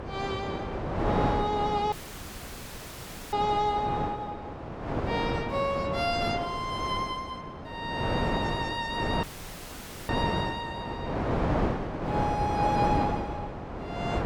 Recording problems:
wind noise; below 790 Hz, SNR 1 dB
dropout; at 2 s for 1.5 s and at 9 s for 1 s

